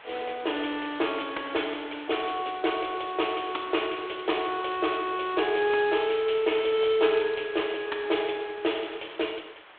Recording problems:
telephone audio; 280 Hz to 3.5 kHz, G.726
hiss; SNR 20 dB

